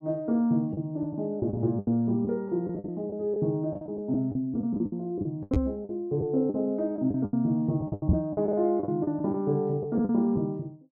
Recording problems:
packet loss; 13% of the sound replaced, filled with the last packet
microphone bump; at 5.5 s and at 8 s; peak +9 dB vs average level

